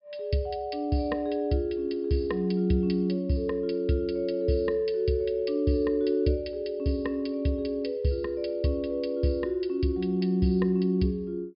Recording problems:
treble cut off; nothing above 5.5 kHz

